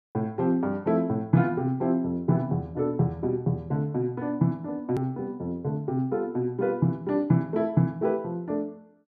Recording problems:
hard cut with a click; at 5 s

